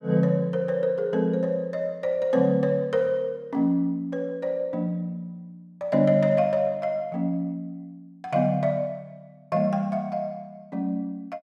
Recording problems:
none

